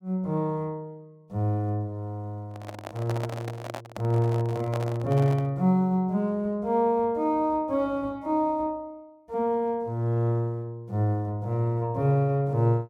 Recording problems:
handling noise; from 2.5 to 5.5 s; peak -4 dB vs average level

